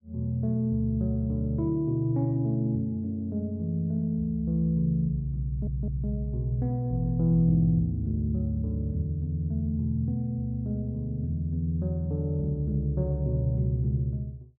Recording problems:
stutter; at 5.5 s

